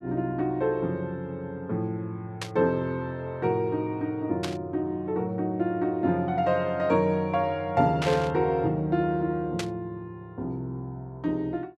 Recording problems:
static burst; 4 times, first at 2.5 s; peak 0 dB vs average level

